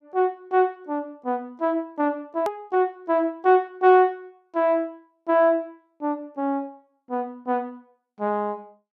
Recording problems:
hard cut with a click; at 2.5 s

